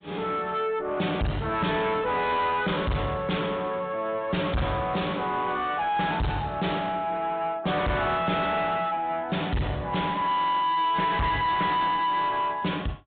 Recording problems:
treble missing; nothing above 3.7 kHz
codec artefacts; AAC, log-spectral distance 2 dB
distorted audio; soft clipping, signal-to-distortion ratio 5 dB

